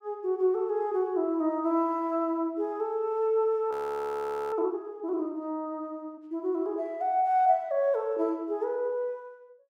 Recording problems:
audio freezing; at 3.5 s for 1 s

